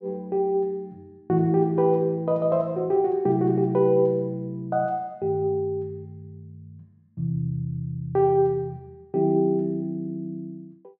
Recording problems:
none

